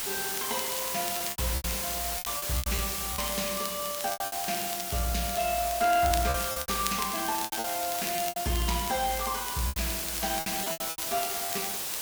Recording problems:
distorted audio; soft clipping, signal-to-distortion ratio 10 dB
hiss; SNR 1 dB
crackle; vinyl, SNR 12 dB
packet loss; 11% of the sound replaced, filled with repeated pitch periods

